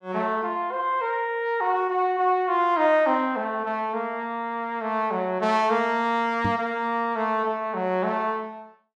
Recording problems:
microphone thump; at 6.5 s; peak -1 dB vs average level

